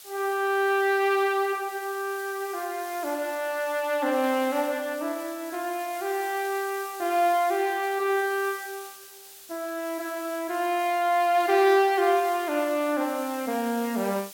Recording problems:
background hiss; slope +2 dB per octave, SNR 17 dB

